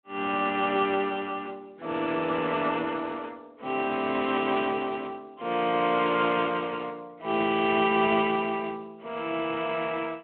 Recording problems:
phone line; 190 Hz to 3.5 kHz, Speex

